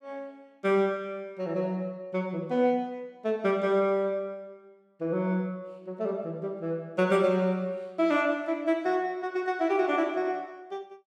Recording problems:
none

